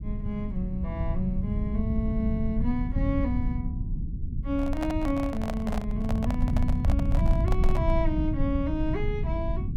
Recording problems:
rumble; below 110 Hz, SNR -2 dB
microphone handling noise; from 4.5 to 8 s; peak +1 dB vs average level

